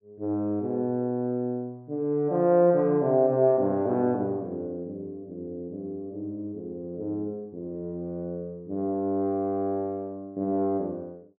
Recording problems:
none

